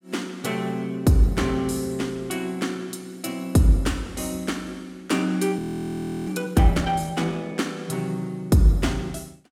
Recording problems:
frozen audio; at 5.5 s for 0.5 s

